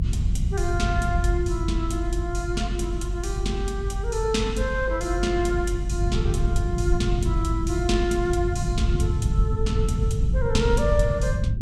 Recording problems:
rumble; below 110 Hz, strongest tone 46 Hz, SNR -1 dB

